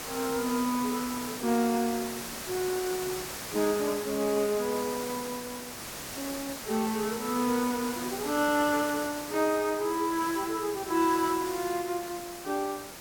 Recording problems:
background hiss; slope -2 dB per octave, SNR 7 dB

